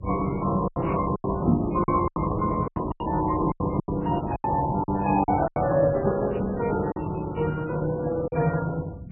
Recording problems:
lossy compression; Opus, then MP3, log-spectral distance 4 dB, nothing above 2.4 kHz
rumble; below 160 Hz, SNR 9 dB
lost packets; 10% of the sound replaced, filled with silence
crackle; from 1 to 2.5 s, at 5.5 s and from 6.5 to 7.5 s; loose cable, SNR 25 dB
microphone thump; at 1.5 s; peak +9 dB vs average level

